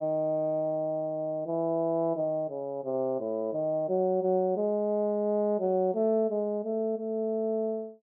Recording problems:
none

